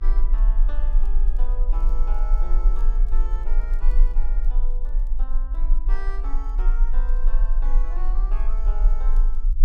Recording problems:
hum; 50 Hz, harmonics up to 600 Hz, SNR 15 dB
rumble; below 34 Hz, strongest tone 22 Hz, SNR -17 dB
crackle; vinyl, SNR 27 dB
microphone handling noise; from 2.5 to 4.5 s; peak -10 dB vs average level

